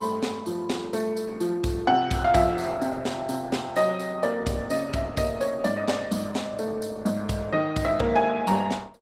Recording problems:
codec artefacts; Opus, log-spectral distance 4 dB, nothing above 16 kHz

